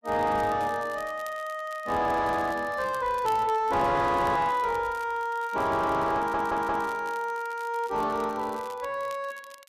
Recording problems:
distortion; soft clipping, signal-to-distortion ratio 7 dB
crackle; vinyl, SNR 24 dB
stutter; at 6 s

